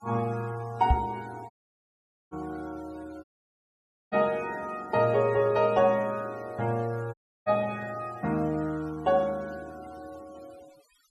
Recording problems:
denoising artefacts; signal-to-artefact ratio 24 dB
microphone thump; at 1 s; peak +7 dB vs average level
dropout; at 1.5 s for 1 s, at 3 s for 1 s and at 7 s

